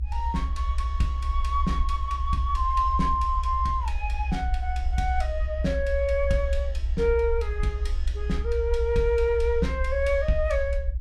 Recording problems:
rumble; below 66 Hz, SNR 2 dB

